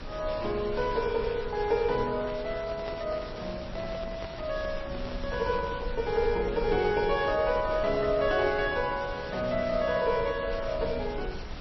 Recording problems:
lossy codec; MP3, then MP3, log-spectral distance 6 dB, nothing above 4.6 kHz
background hiss; slope -4 dB per octave, SNR 14 dB
low-frequency rumble; below 70 Hz, SNR 14 dB
microphone handling noise; from 2 to 6 s; peak -8 dB vs average level

